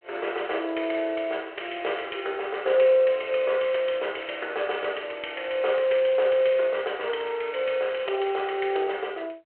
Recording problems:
phone line; 340 Hz to 3.2 kHz, G.726

